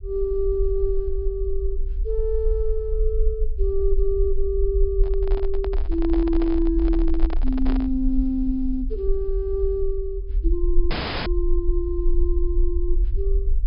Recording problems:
low-pass filter; nothing above 5.5 kHz
rumble; below 44 Hz, SNR 1 dB
handling noise; from 5 to 8 s; peak -4 dB vs average level
audio cutting out; at 11 s

